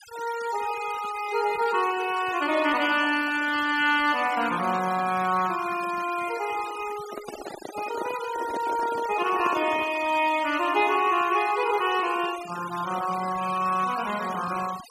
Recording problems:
noise reduction artefacts; signal-to-artefact ratio 14 dB
microphone handling noise; from 7 to 10 s; peak -5 dB vs average level

